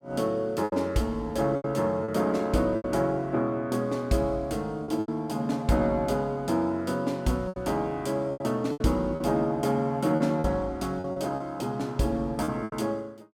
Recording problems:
packet loss; 8% of the sound replaced, filled with repeated pitch periods

